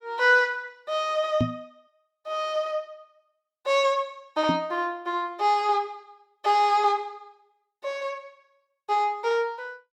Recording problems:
microphone thump; at 1.5 s and at 4.5 s; peak +4 dB vs average level

